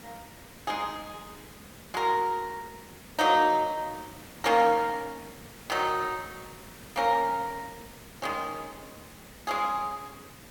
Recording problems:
hiss; slope -3 dB per octave, SNR 19 dB

